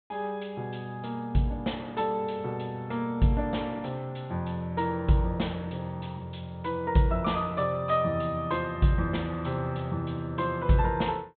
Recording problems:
low-pass filter; nothing above 4 kHz

